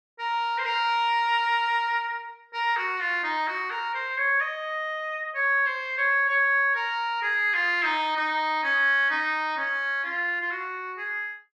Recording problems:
none

